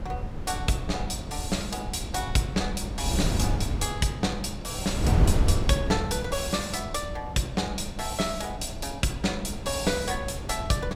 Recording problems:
wind on the microphone; below 160 Hz, SNR 2 dB

